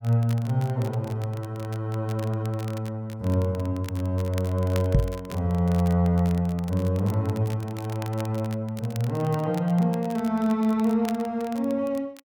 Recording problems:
crackling; vinyl, SNR 20 dB
microphone bump; at 5 s; peak +9 dB vs average level

